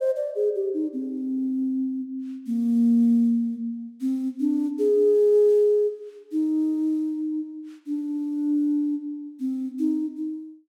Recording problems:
none

